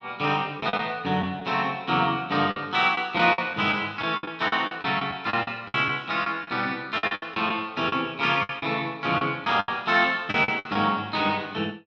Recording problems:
packet loss; 10% of the sound replaced, filled with the last packet

